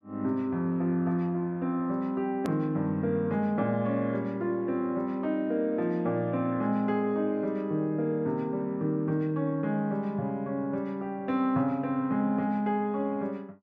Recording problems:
edit click; at 2.5 s

